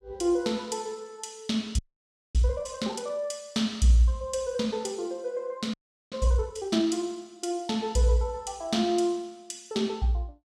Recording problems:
frozen audio; at 2 s for 0.5 s and at 5.5 s

